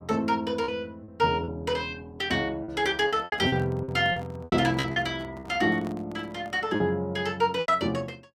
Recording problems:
packet loss; 9% of the sound replaced, filled with repeated pitch periods
microphone handling noise; from 3 to 6.5 s; peak -10 dB vs average level

